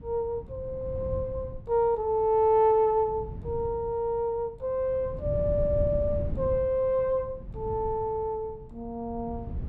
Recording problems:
wind on the microphone; below 140 Hz, SNR 11 dB

